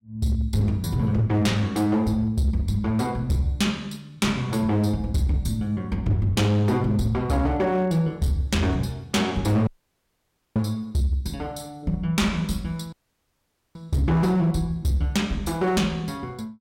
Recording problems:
distortion; hard clipping, signal-to-distortion ratio 11 dB
dropout; at 9.5 s for 1 s and at 13 s for 1 s

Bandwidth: 16.5 kHz